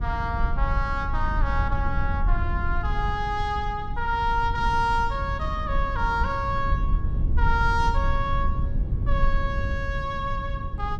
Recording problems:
low-frequency rumble; below 74 Hz, SNR 1 dB

